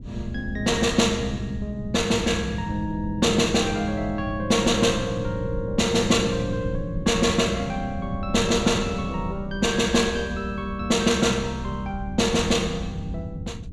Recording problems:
rumble; below 160 Hz, SNR 12 dB

